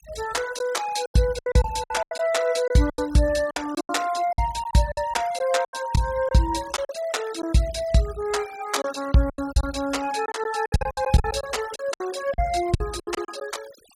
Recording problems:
noise reduction artefacts; signal-to-artefact ratio 18 dB
packet loss; 13% of the sound replaced, filled with silence

